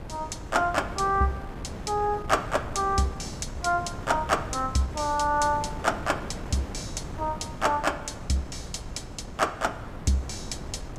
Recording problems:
wind on the microphone; below 450 Hz, SNR 10 dB

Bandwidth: 15.5 kHz